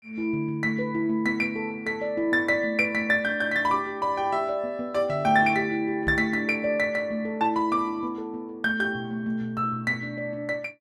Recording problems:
knock on the microphone; at 6 s; peak -2 dB vs average level

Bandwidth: 15.5 kHz